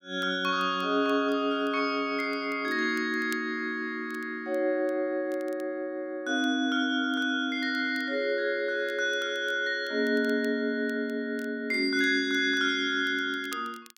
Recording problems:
crackle; vinyl, SNR 27 dB

